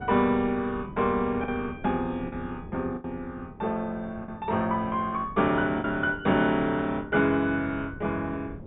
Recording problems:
low-pass filter; nothing above 4 kHz
wind noise; below 300 Hz, SNR 17 dB
lost packets; 3% of the sound replaced, filled with the last packet

